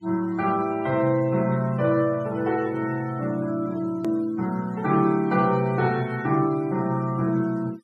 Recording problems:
denoising artefacts; signal-to-artefact ratio 25 dB
edit click; at 4 s

